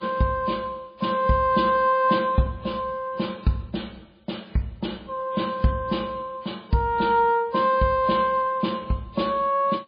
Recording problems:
lossy compression; MP3, log-spectral distance 3 dB, nothing above 4.8 kHz

